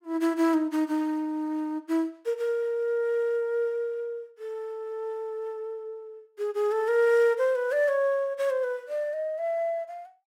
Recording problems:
none

